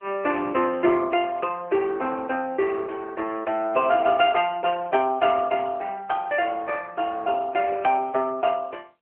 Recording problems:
phone line; 300 Hz to 3.1 kHz, AMR-NB

